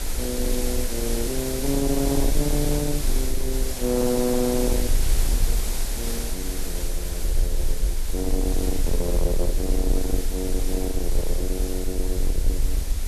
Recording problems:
distortion; soft clipping, signal-to-distortion ratio 10 dB
hiss; SNR 4 dB
rumble; below 44 Hz, strongest tone 24 Hz, SNR 1 dB

